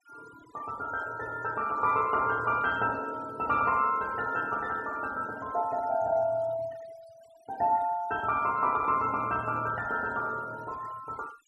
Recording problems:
noise reduction artefacts; signal-to-artefact ratio 21 dB

